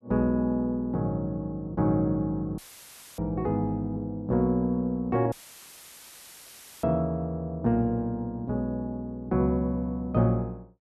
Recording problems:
audio cutting out; at 2.5 s for 0.5 s and at 5.5 s for 1.5 s; filled with static

